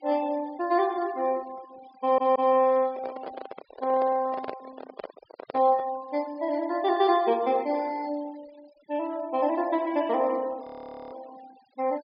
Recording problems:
treble missing; nothing above 5.5 kHz
noise reduction artefacts; signal-to-artefact ratio 25 dB
audio stuttering; at 2 s
microphone handling noise; from 3 to 6 s; peak -4 dB vs average level
frozen audio; at 11 s

